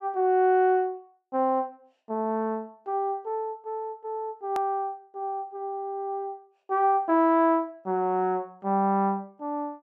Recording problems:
click at an edit; at 4.5 s

